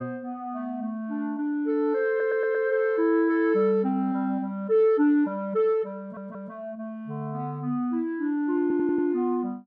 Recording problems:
stutter; at 2 s, at 6 s and at 8.5 s

